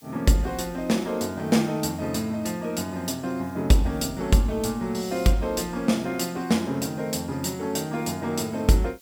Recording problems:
hiss; slope +4 dB per octave, SNR 28 dB

